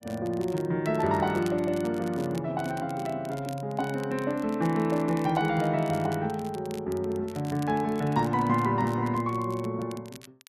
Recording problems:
crackle; vinyl, SNR 22 dB

